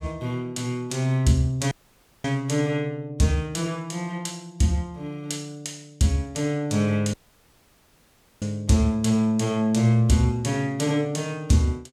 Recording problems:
audio cutting out; at 1.5 s for 0.5 s and at 7 s for 1.5 s

